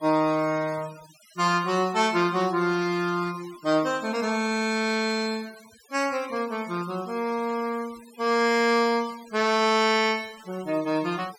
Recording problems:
denoising artefacts; signal-to-artefact ratio 20 dB

